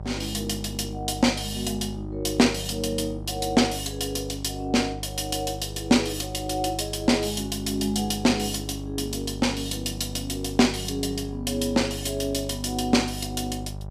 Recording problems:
hum; 50 Hz, harmonics up to 950 Hz, SNR 11 dB

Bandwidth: 14.5 kHz